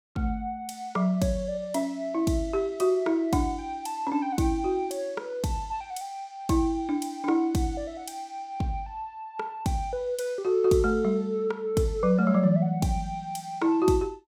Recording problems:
none

